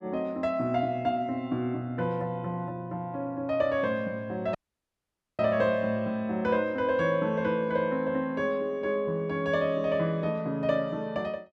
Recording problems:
dropout; at 4.5 s for 1 s

